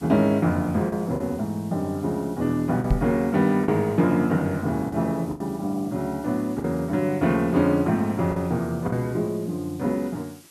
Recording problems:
hiss; SNR 25 dB
lost packets; 4% of the sound replaced, filled with the last packet
microphone thump; at 3 s; peak +4 dB vs average level

